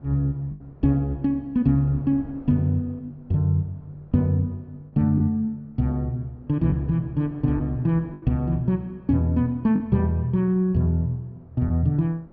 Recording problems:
low-pass filter; nothing above 6 kHz
wind noise; below 360 Hz, SNR 25 dB
lost packets; 3% of the sound replaced, filled with the last packet

